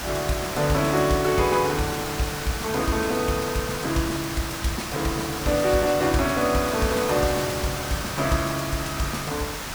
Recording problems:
background hiss; slope -2 dB per octave, SNR 5 dB

